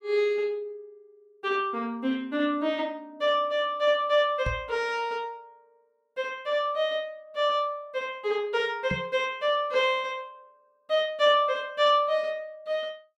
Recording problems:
microphone bump; at 4.5 s and at 9 s; peak -1 dB vs average level

